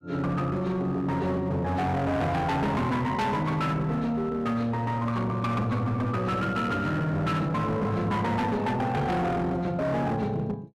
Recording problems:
distortion; hard clipping, signal-to-distortion ratio 8 dB

